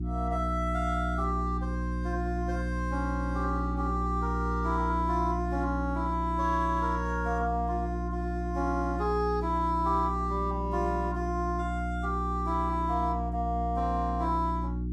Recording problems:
hum; 60 Hz, harmonics up to 360 Hz, SNR 2 dB

